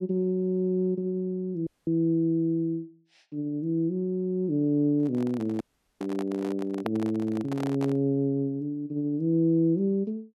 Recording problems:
audio cutting out; at 1.5 s and at 5.5 s
handling noise; from 5 to 8 s; peak -1 dB vs average level

